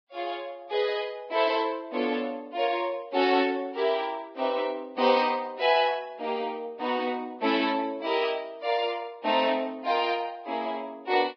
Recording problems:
lossy codec; Vorbis, log-spectral distance 2 dB

